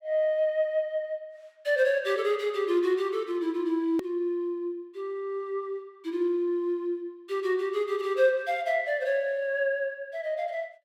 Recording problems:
hard cut with a click; at 4 s

